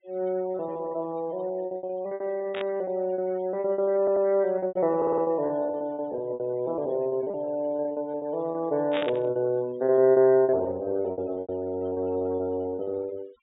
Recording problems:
treble cut off; nothing above 4 kHz
noise reduction artefacts; signal-to-artefact ratio 26 dB
packet loss; 18% of the sound replaced, filled with repeated pitch periods
burst of static; at 2.5 s and at 9 s; peak -3 dB vs average level
stutter; at 4 s and at 5 s

